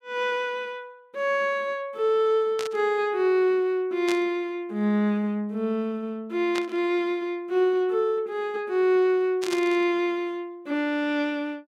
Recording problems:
static burst; 4 times, first at 2.5 s; peak -4 dB vs average level

